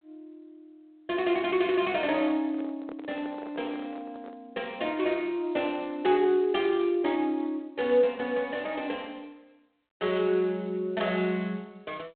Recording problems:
telephone audio; 220 Hz to 3.7 kHz, G.726
microphone handling noise; from 2.5 to 4.5 s; peak -11 dB vs average level

